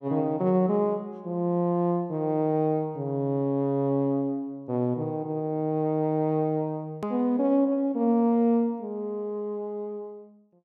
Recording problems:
hard cut with a click; at 7 s

